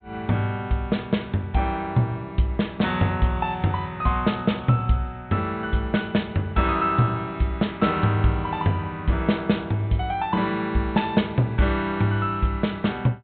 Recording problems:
low-pass filter; nothing above 4 kHz

